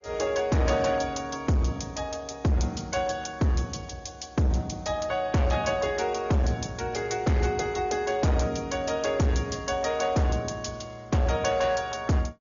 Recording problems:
low-pass filter; nothing above 6.9 kHz
lossy codec; AAC, log-spectral distance 3 dB
distortion; hard clipping, signal-to-distortion ratio 10 dB

